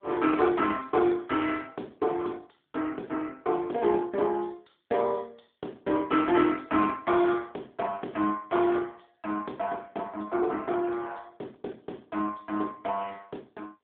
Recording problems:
telephone audio; 260 Hz to 3.5 kHz, AMR-NB

